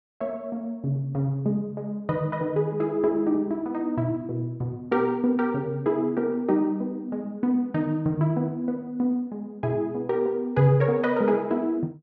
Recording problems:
none

